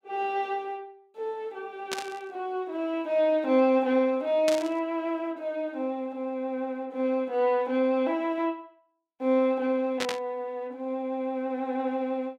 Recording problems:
burst of static; at 2 s, at 4.5 s and at 10 s; peak +1 dB vs average level

